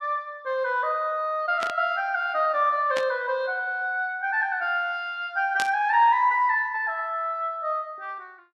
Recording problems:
static burst; at 1.5 s, at 3 s and at 5.5 s; peak -2 dB vs average level

